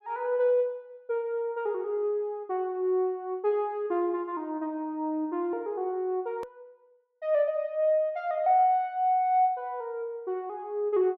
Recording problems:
hard cut with a click; at 6.5 s

